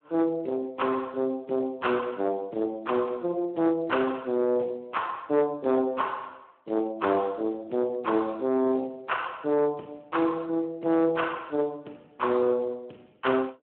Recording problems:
phone line; 280 Hz to 3.1 kHz, Speex
distorted audio; soft clipping, signal-to-distortion ratio 13 dB

